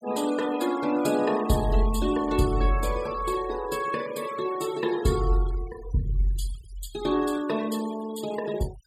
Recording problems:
denoising artefacts; signal-to-artefact ratio 16 dB

